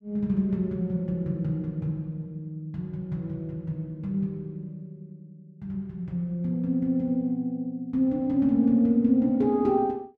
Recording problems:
none

